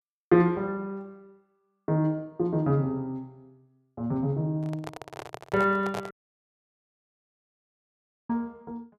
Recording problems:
microphone handling noise; from 4.5 to 6 s; peak -3 dB vs average level
dropout; at 6 s for 2 s

